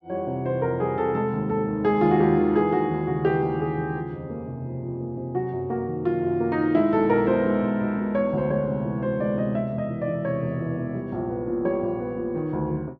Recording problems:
none

